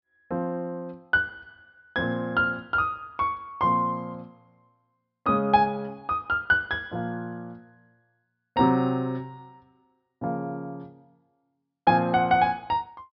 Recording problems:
treble missing; nothing above 5.5 kHz

